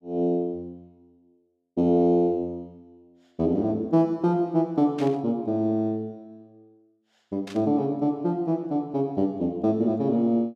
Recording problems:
burst of static; at 5 s and at 7.5 s; peak -12 dB vs average level

